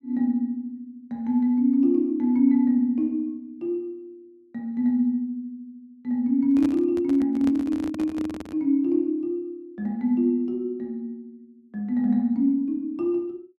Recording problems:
handling noise; from 6.5 to 8.5 s; peak -5 dB vs average level

